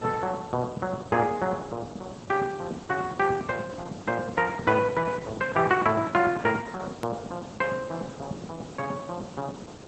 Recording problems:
lossy compression; Opus, log-spectral distance 8 dB, nothing above 13.1 kHz
hiss; SNR 16 dB
edit click; at 7 s

